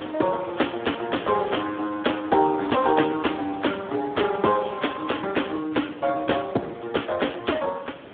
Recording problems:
phone line; 240 Hz to 3.5 kHz, Speex
wind on the microphone; below 1.6 kHz, SNR 18 dB

